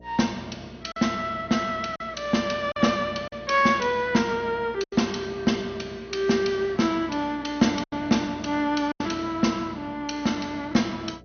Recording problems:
lossy compression; MP2, log-spectral distance 4 dB, nothing above 6.3 kHz
hum; 60 Hz, harmonics up to 720 Hz, SNR 24 dB
lost packets; 4% of the sound replaced, filled with silence

